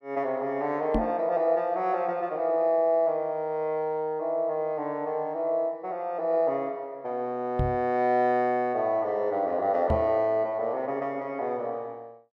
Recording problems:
microphone thump; at 1 s, at 7.5 s and at 10 s; peak +3 dB vs average level

